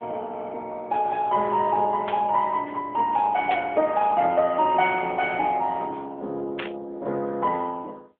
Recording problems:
phone line; 300 Hz to 3.4 kHz, AMR-NB
burst of static; at 2 s, at 3.5 s and at 6.5 s; peak -5 dB vs average level

